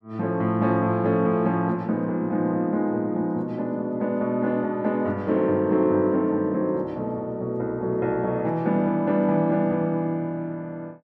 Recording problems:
none

